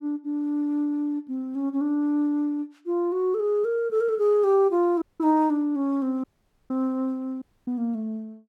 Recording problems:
audio cutting out; at 5 s, at 6 s and at 7.5 s

